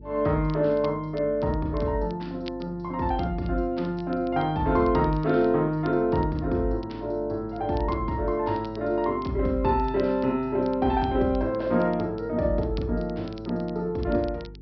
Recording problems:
treble missing; nothing above 5.5 kHz
hum; 50 Hz, harmonics up to 450 Hz, SNR 19 dB
crackling; vinyl, SNR 27 dB

